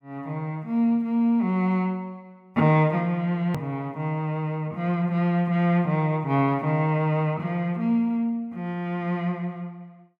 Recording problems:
click at an edit; at 3.5 s

